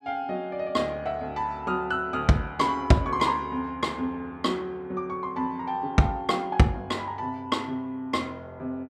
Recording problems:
none

